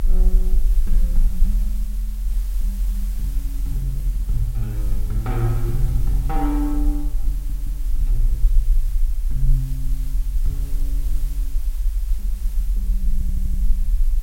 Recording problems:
hiss; slope -1 dB per octave, SNR 14 dB
rumble; below 42 Hz, SNR -6 dB
crackle; from 1 to 2.5 s and from 9.5 to 12 s; loose cable, SNR 28 dB
stutter; at 7.5 s and at 13 s

